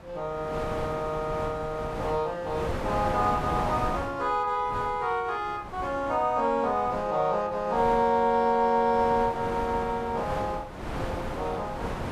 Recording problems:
wind noise; below 1 kHz, SNR 9 dB

